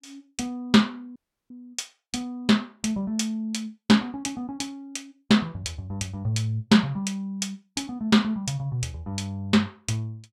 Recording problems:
audio cutting out; at 1 s

